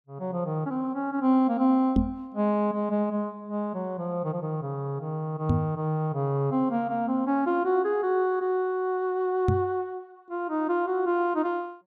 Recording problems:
microphone bump; at 2 s, at 5.5 s and at 9.5 s; peak +7 dB vs average level

